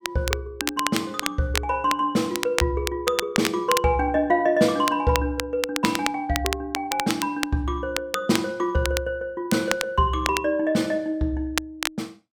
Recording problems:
crackling; vinyl, SNR 6 dB

